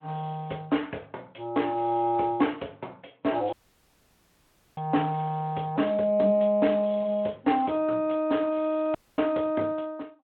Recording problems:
phone line; 240 Hz to 3.3 kHz, Speex
dropout; at 3.5 s for 1 s and at 9 s

